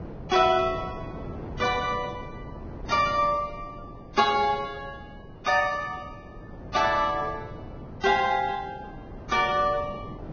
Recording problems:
lossy codec; Vorbis, log-spectral distance 3 dB, nothing above 6.5 kHz
wind noise; below 440 Hz, SNR 15 dB

